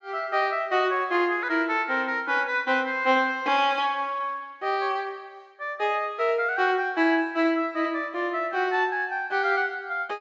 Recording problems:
treble cut off; nothing above 8 kHz

